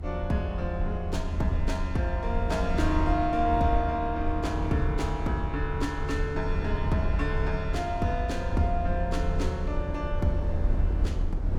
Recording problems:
rumble; below 80 Hz, SNR 2 dB

